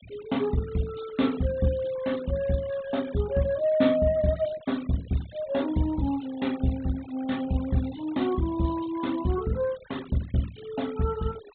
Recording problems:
low-pass filter; nothing above 4 kHz
denoising artefacts; signal-to-artefact ratio 20 dB

